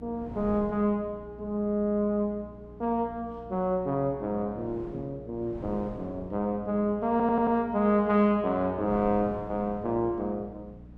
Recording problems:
hum; 60 Hz, harmonics up to 300 Hz, SNR 20 dB
wind on the microphone; below 350 Hz, SNR 19 dB
audio stuttering; at 7 s

